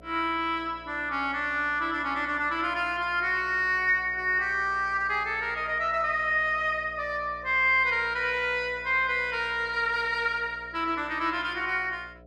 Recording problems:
hum; 60 Hz, harmonics up to 720 Hz, SNR 24 dB

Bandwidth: 14 kHz